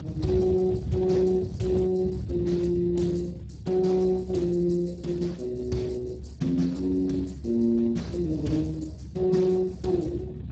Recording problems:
codec artefacts; Opus, then Speex, log-spectral distance 3 dB, nothing above 7.3 kHz
rumble; below 140 Hz, strongest tone 70 Hz, SNR 9 dB

